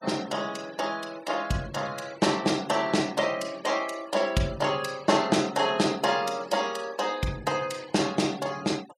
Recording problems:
denoising artefacts; signal-to-artefact ratio 20 dB

